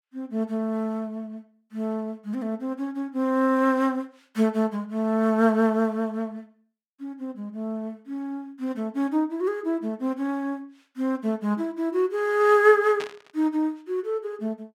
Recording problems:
static burst; at 13 s; peak -5 dB vs average level

